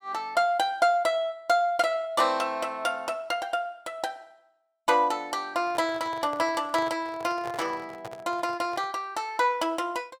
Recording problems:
handling noise; from 5.5 to 9 s; peak -8 dB vs average level

